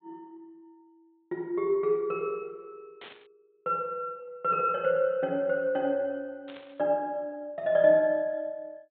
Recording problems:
low-pass filter; nothing above 4 kHz
burst of static; at 3 s and at 6.5 s; peak -14 dB vs average level

